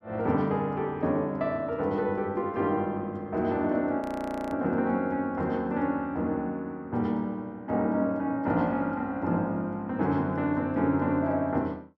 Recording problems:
frozen audio; at 4 s for 0.5 s

